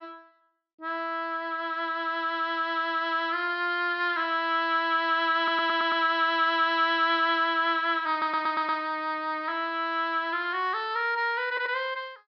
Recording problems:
treble cut off; nothing above 5.5 kHz
stutter; at 5.5 s, at 8 s and at 11 s

